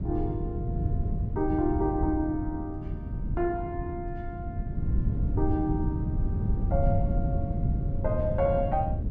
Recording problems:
wind noise; below 140 Hz, SNR -1 dB

